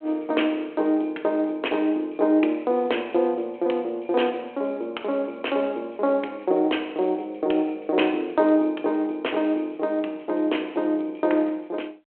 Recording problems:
phone line; 280 Hz to 3.3 kHz, G.726

